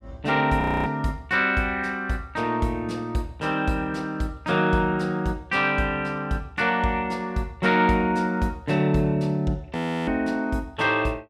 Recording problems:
audio freezing; at 0.5 s and at 10 s

